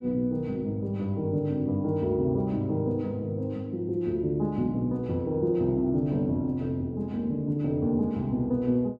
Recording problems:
none

